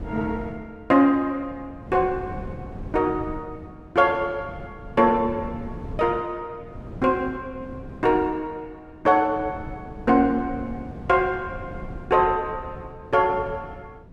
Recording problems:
wind noise; below 260 Hz, SNR 16 dB

